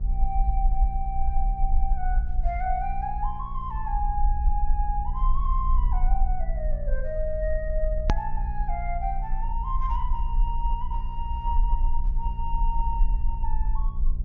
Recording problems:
treble missing; nothing above 6.5 kHz
hum; 60 Hz, harmonics up to 420 Hz, SNR 8 dB
rumble; below 44 Hz, strongest tone 20 Hz, SNR -4 dB
click at an edit; at 8 s

